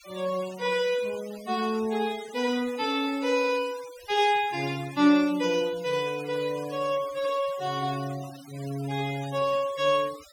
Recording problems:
denoising artefacts; signal-to-artefact ratio 18 dB

